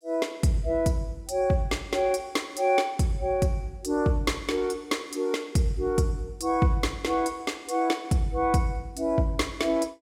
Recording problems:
none

